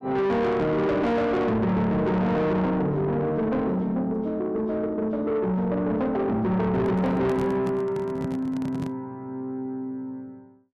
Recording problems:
distortion; soft clipping, signal-to-distortion ratio 8 dB
handling noise; from 6.5 to 9 s; peak -2 dB vs average level

